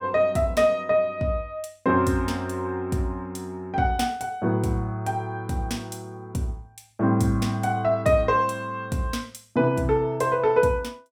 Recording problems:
none

